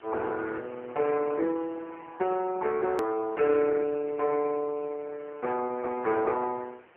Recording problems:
telephone audio; 300 Hz to 2.7 kHz, AMR-NB
background hiss; SNR 27 dB
edit click; at 3 s

